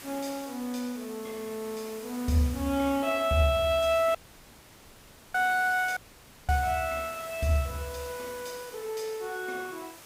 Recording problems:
hiss; slope -2 dB per octave, SNR 15 dB
audio cutting out; at 4 s for 1 s and at 6 s for 0.5 s

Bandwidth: 15.5 kHz